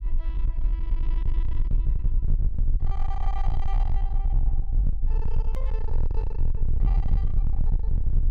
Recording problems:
distortion; hard clipping, signal-to-distortion ratio 6 dB
rumble; below 48 Hz, strongest tone 18 Hz, SNR -15 dB
click at an edit; at 5.5 s

